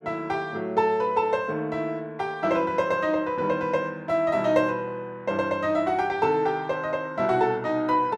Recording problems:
none

